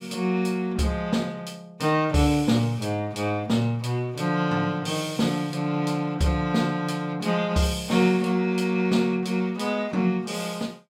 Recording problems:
none

